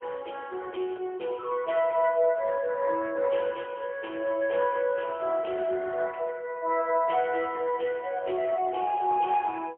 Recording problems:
telephone audio; 320 Hz to 2.9 kHz, AMR-NB, then MP3

